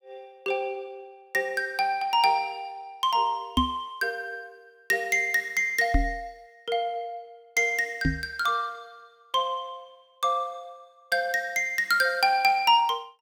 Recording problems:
microphone thump; at 3.5 s, at 6 s and at 8 s; peak +4 dB vs average level

